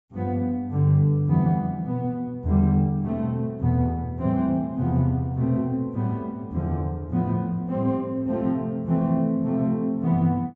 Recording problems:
treble cut off; nothing above 8 kHz

